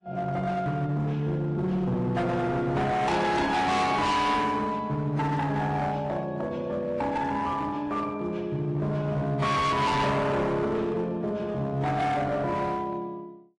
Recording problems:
codec artefacts; AAC, log-spectral distance 2 dB, nothing above 10.4 kHz
distorted audio; hard clipping, uneven, signal-to-distortion ratio 7 dB

